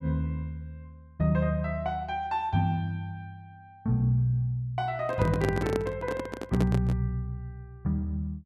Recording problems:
microphone handling noise; from 5 to 7 s; peak +2 dB vs average level

